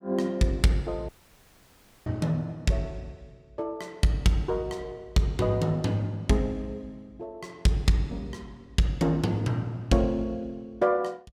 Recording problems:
dropout; at 1 s for 1 s

